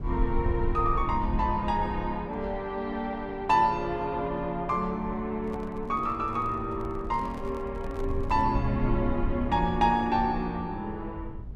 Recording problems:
rumble; below 82 Hz, SNR 8 dB
microphone handling noise; from 5.5 to 8.5 s; peak -11 dB vs average level

